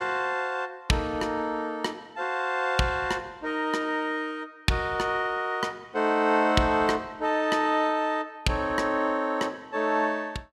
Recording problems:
none

